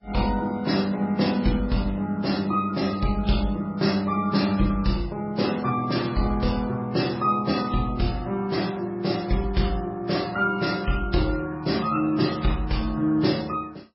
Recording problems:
lossy codec; Vorbis, then MP3, log-spectral distance 4 dB, nothing above 5.5 kHz

